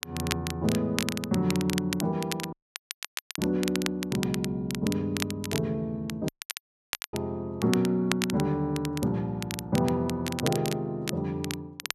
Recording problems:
crackle; vinyl, SNR 7 dB
dropout; at 2.5 s for 1 s and at 6.5 s for 1 s

